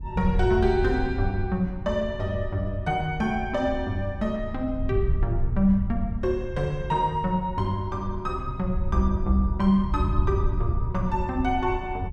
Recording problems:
wind on the microphone; below 90 Hz, SNR 5 dB

